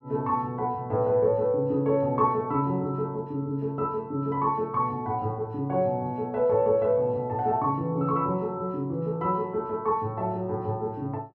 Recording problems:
none

